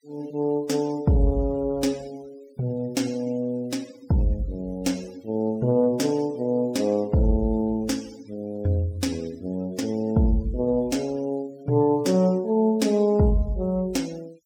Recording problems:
denoising artefacts; signal-to-artefact ratio 24 dB

